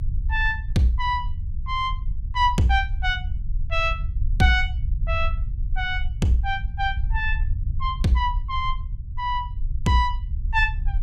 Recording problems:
rumble; below 66 Hz, SNR 5 dB

